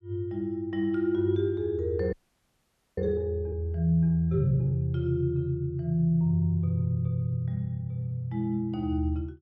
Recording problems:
audio freezing; at 2 s for 1 s

